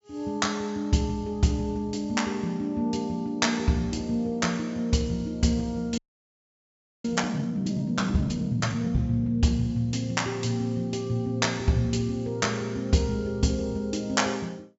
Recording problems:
treble missing; nothing above 8 kHz
audio freezing; at 6 s for 1 s

